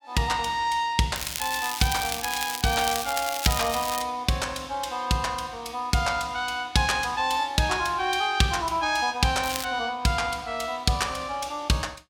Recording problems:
crackling; from 1 to 4 s and at 9.5 s; loose cable, SNR 6 dB

